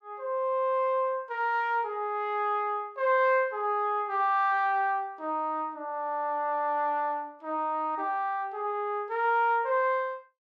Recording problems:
none

